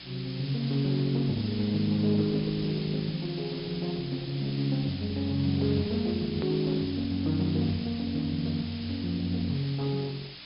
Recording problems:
low-pass filter; nothing above 5.2 kHz
lossy codec; Opus, log-spectral distance 2 dB
hum; 60 Hz, harmonics up to 300 Hz, SNR 26 dB
background hiss; slope +2 dB per octave, SNR 12 dB
edit click; at 6.5 s

